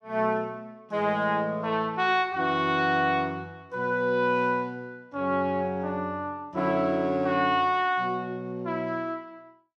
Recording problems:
none

